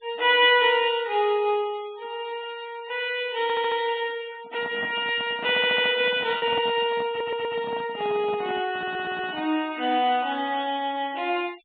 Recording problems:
treble missing; nothing above 4 kHz
noise reduction artefacts; signal-to-artefact ratio 23 dB
packet loss; 0.4% of the sound replaced, filled with repeated pitch periods
audio stuttering; 4 times, first at 3.5 s
handling noise; from 4.5 to 9.5 s; peak -8 dB vs average level

